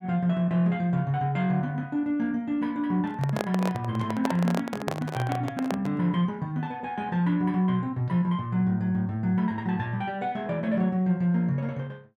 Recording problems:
microphone handling noise; from 3 to 6 s; peak +2 dB vs average level

